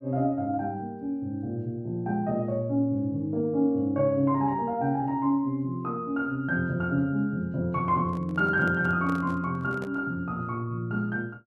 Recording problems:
microphone handling noise; from 8 to 10 s; peak -9 dB vs average level

